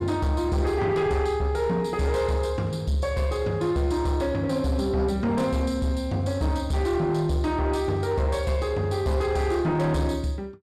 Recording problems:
distortion; soft clipping, signal-to-distortion ratio 11 dB

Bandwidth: 13.5 kHz